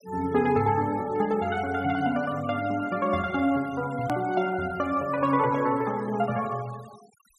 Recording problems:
noise reduction artefacts; signal-to-artefact ratio 21 dB
edit click; at 4 s

